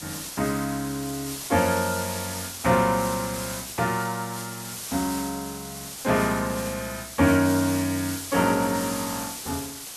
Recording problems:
background hiss; slope 0 dB per octave, SNR 8 dB

